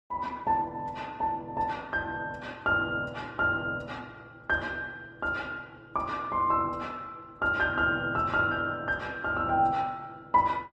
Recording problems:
lossy compression; Opus, log-spectral distance 2 dB

